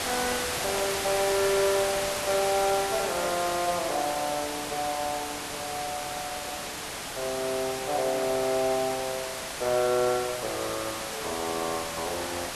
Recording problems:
background hiss; slope -2 dB per octave, SNR 3 dB

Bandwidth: 12.5 kHz